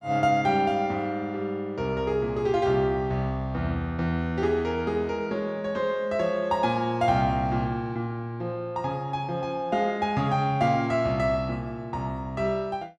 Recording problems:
none

